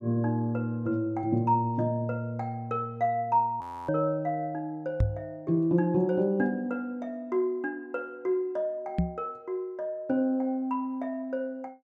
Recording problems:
frozen audio; at 3.5 s
knock on the microphone; at 5 s and at 9 s; peak +7 dB vs average level

